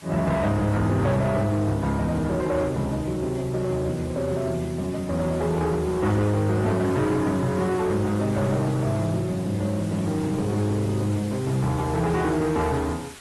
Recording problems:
lossy compression; AAC, then AAC, log-spectral distance 4 dB, nothing above 13.1 kHz
distorted audio; soft clipping, signal-to-distortion ratio 11 dB
background hiss; slope -1 dB per octave, SNR 19 dB

